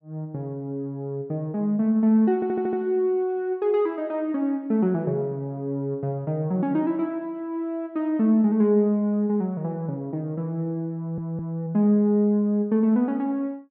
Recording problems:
audio stuttering; at 2.5 s and at 11 s

